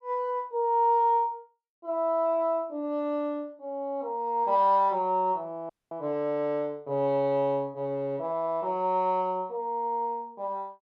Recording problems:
dropout; at 5.5 s

